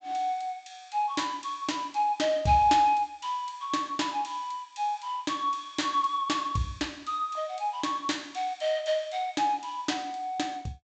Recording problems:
treble missing; nothing above 8 kHz

